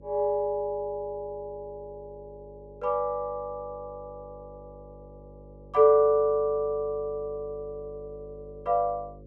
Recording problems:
hum; 50 Hz, harmonics up to 550 Hz, SNR 22 dB

